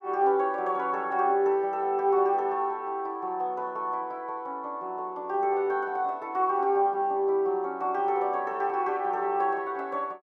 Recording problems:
none

